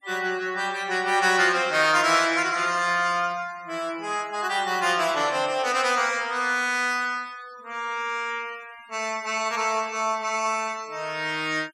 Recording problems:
noise reduction artefacts; signal-to-artefact ratio 23 dB

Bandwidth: 16.5 kHz